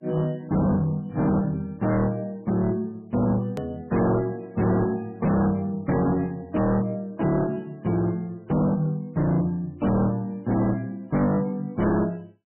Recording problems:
codec artefacts; MP3, log-spectral distance 2 dB, nothing above 13.1 kHz
distorted audio; hard clipping, uneven, signal-to-distortion ratio 6 dB
hard cut with a click; at 3.5 s

